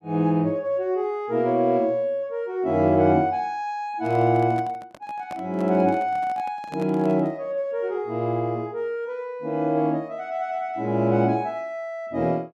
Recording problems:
microphone handling noise; from 4 to 7.5 s; peak -10 dB vs average level

